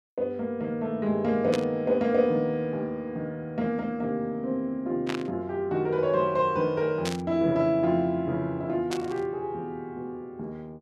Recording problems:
burst of static; 4 times, first at 1.5 s; peak -2 dB vs average level

